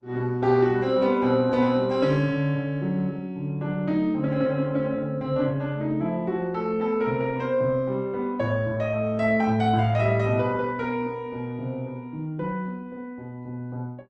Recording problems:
codec artefacts; Opus, log-spectral distance 2 dB

